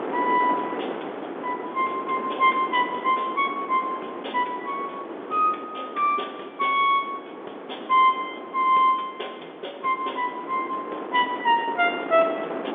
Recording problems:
phone line; 260 Hz to 3.6 kHz, G.711
wind noise; below 910 Hz, SNR 11 dB

